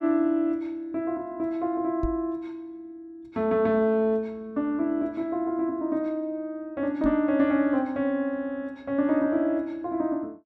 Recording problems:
knock on the microphone; at 2 s and at 7 s; peak -2 dB vs average level

